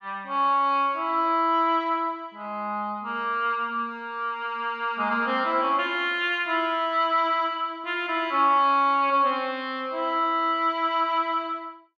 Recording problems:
none

